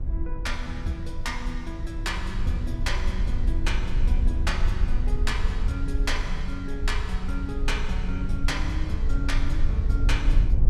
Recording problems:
rumble; below 60 Hz, SNR -4 dB

